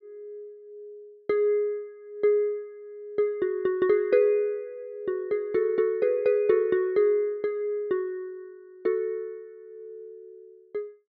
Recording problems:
none

